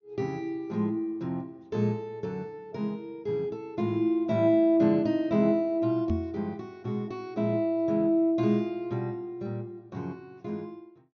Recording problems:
treble cut off; nothing above 6.7 kHz
knock on the microphone; at 6 s; peak +3 dB vs average level

